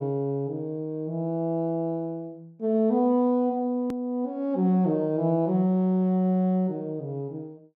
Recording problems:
hard cut with a click; at 4 s

